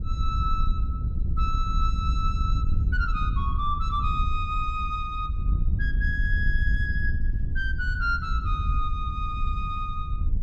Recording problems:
wind on the microphone; below 76 Hz, SNR -2 dB

